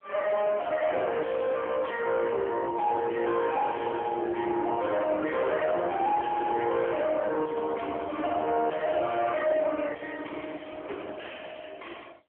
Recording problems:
phone line; 260 Hz to 2.8 kHz, AMR-NB
distortion; soft clipping, signal-to-distortion ratio 6 dB

